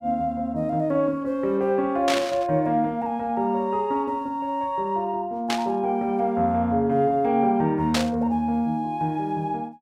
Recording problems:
burst of static; at 2 s, at 5.5 s and at 8 s; peak +3 dB vs average level

